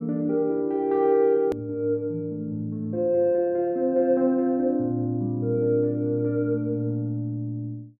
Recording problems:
hard cut with a click; at 1.5 s

